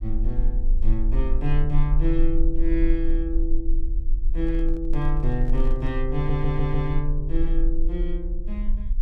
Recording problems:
low-frequency rumble; below 34 Hz, strongest tone 22 Hz, SNR -1 dB
microphone handling noise; from 4.5 to 6 s; peak -10 dB vs average level
stutter; at 6 s

